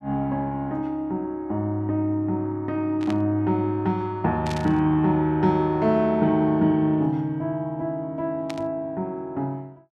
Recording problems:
static burst; at 3 s, at 4.5 s and at 8.5 s; peak -7 dB vs average level

